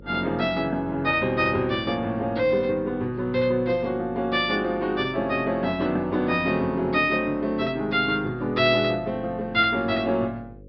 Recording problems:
low-pass filter; nothing above 5.5 kHz
hum; 50 Hz, harmonics up to 550 Hz, SNR 22 dB

